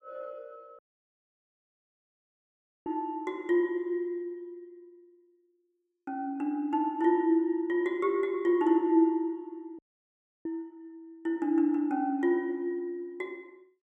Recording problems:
dropout; at 1 s for 2 s and at 10 s for 0.5 s

